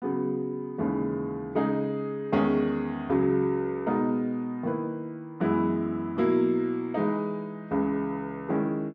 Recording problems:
none

